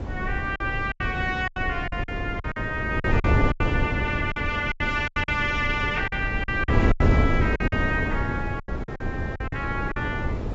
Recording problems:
lossy codec; AAC, log-spectral distance 2 dB, nothing above 7.3 kHz
wind noise; below 280 Hz, SNR 0 dB
lost packets; 13% of the sound replaced, filled with silence

